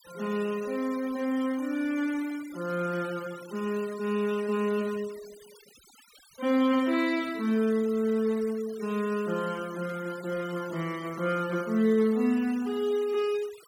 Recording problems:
denoising artefacts; signal-to-artefact ratio 20 dB

